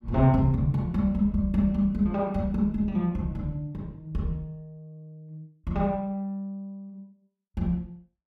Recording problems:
none

